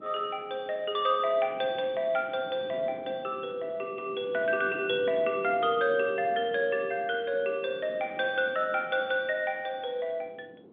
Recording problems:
phone line; 260 Hz to 3.6 kHz, G.711
wind on the microphone; below 450 Hz, SNR 19 dB

